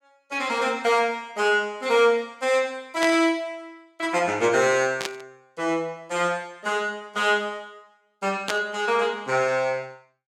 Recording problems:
burst of static; at 3 s, at 5 s and at 8.5 s; peak +1 dB vs average level

